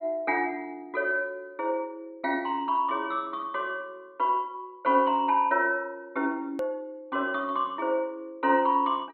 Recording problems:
treble missing; nothing above 4.5 kHz
click at an edit; at 6.5 s

